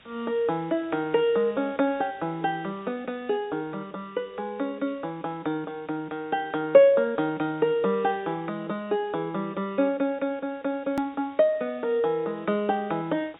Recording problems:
treble cut off; nothing above 4 kHz
background hiss; SNR 29 dB
click at an edit; at 11 s

